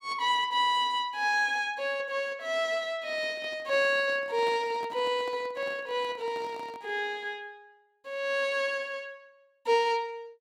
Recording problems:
handling noise; from 3 to 7 s; peak -10 dB vs average level

